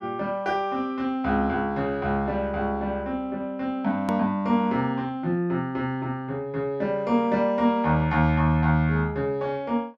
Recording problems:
edit click; at 4 s

